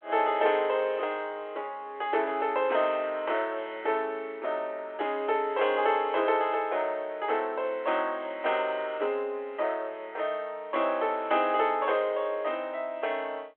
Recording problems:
phone line; 340 Hz to 3.4 kHz, G.726

